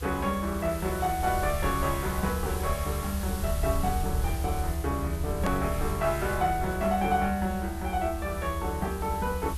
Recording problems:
background hiss; slope 0 dB per octave, SNR 12 dB
rumble; below 78 Hz, SNR 5 dB
click at an edit; at 5.5 s

